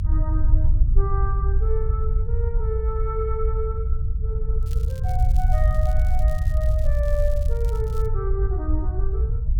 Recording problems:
low-frequency rumble; below 64 Hz, SNR -9 dB
crackling; from 4.5 to 8 s; loose cable, SNR 17 dB

